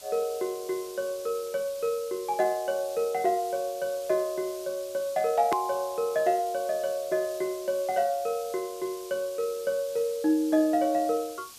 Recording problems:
background hiss; SNR 16 dB
click at an edit; at 5.5 s

